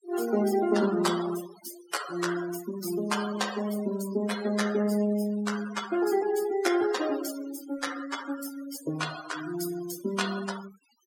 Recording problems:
denoising artefacts; signal-to-artefact ratio 9 dB

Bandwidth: 18 kHz